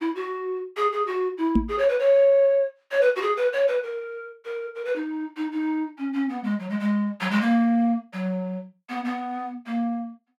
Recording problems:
microphone thump; at 1.5 s; peak +7 dB vs average level

